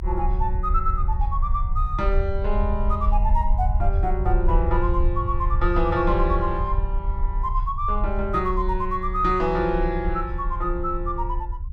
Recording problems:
low-frequency rumble; below 62 Hz, strongest tone 34 Hz, SNR 1 dB

